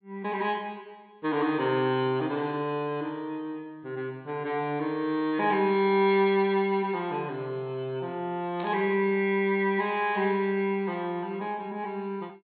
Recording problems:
low-pass filter; nothing above 4.2 kHz
static burst; at 8.5 s; peak -13 dB vs average level

